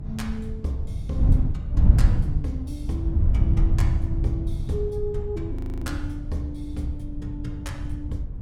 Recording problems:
mains hum; 50 Hz, harmonics up to 550 Hz, SNR 21 dB
wind on the microphone; below 98 Hz, SNR -7 dB
audio freezing; at 5.5 s

